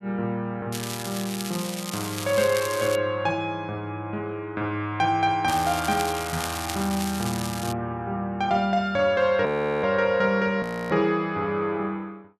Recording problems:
crackle; from 0.5 to 3 s and from 5.5 to 7.5 s; loose cable, SNR 8 dB
audio freezing; at 9.5 s and at 11 s

